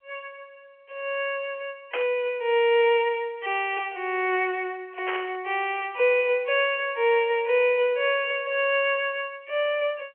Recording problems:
telephone audio; 300 Hz to 3.2 kHz, G.711
burst of static; at 2 s and at 5 s; peak -2 dB vs average level

